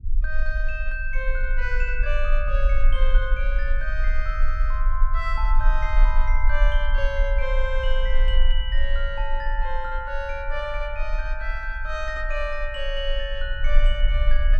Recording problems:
low-frequency rumble; below 38 Hz, strongest tone 20 Hz, SNR -4 dB

